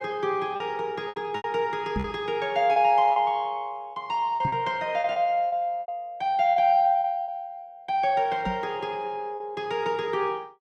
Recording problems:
packet loss; 8% of the sound replaced, filled with repeated pitch periods
microphone bump; at 2 s, at 4.5 s and at 8.5 s; peak 0 dB vs average level

